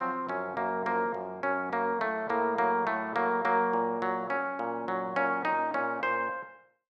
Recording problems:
none

